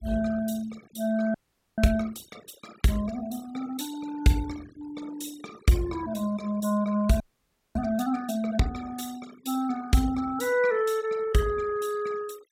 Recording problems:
noise reduction artefacts; signal-to-artefact ratio 20 dB
audio freezing; at 1.5 s and at 7 s for 0.5 s

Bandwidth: 16 kHz